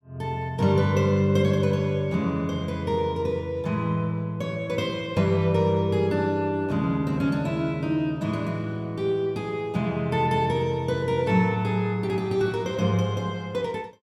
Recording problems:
none

